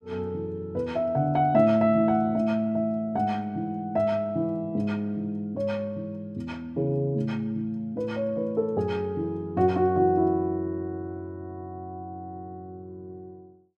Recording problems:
none

